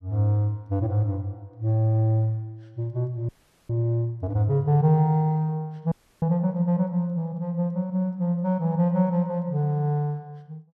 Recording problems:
frozen audio; at 3.5 s and at 6 s

